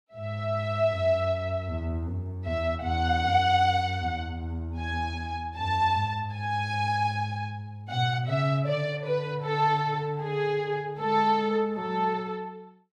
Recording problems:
none

